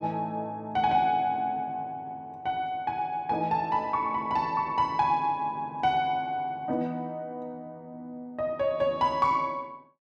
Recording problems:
none

